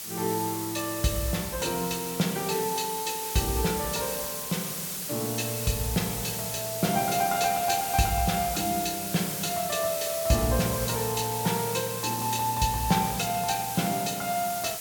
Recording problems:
hiss; slope +1 dB per octave, SNR 4 dB

